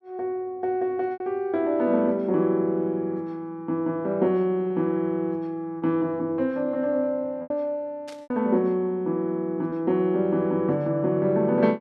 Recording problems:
lost packets; 3% of the sound replaced, filled with repeated pitch periods
burst of static; at 8 s; peak -14 dB vs average level

